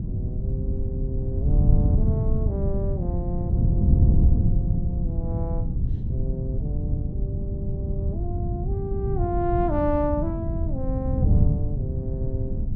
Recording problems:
wind on the microphone; below 130 Hz, SNR -7 dB

